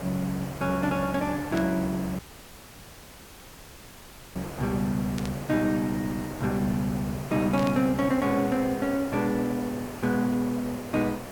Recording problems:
hiss; SNR 12 dB
burst of static; at 1.5 s, at 5 s and at 7.5 s; peak -7 dB vs average level
dropout; at 2 s for 2 s

